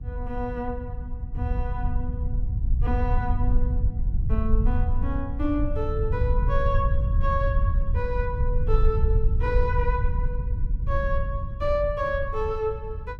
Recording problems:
rumble; below 76 Hz, SNR -3 dB

